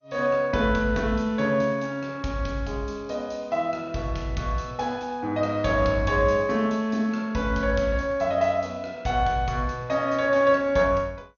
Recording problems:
codec artefacts; MP2, log-spectral distance 2 dB, nothing above 6.7 kHz

